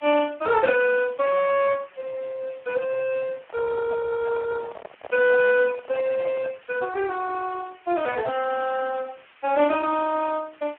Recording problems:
phone line; 320 Hz to 2.9 kHz, Speex
hiss; SNR 27 dB
microphone handling noise; from 3.5 to 6.5 s; peak -8 dB vs average level

